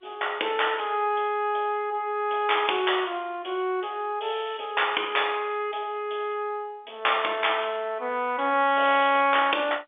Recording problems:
telephone audio; 280 Hz to 3.6 kHz, G.711

